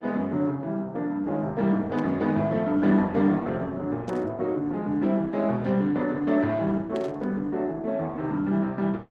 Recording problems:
codec artefacts; Opus, log-spectral distance 2 dB
static burst; at 2 s, at 4 s and at 7 s; peak -14 dB vs average level

